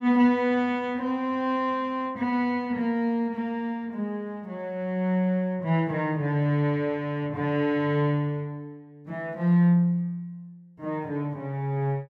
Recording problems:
none

